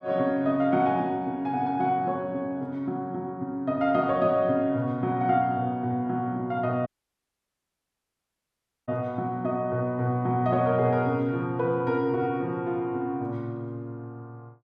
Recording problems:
dropout; at 7 s for 2 s

